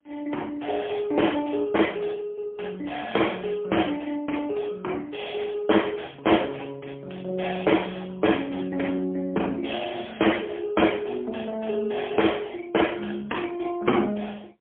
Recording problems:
telephone audio; 240 Hz to 3.4 kHz, AMR-NB, then MP3

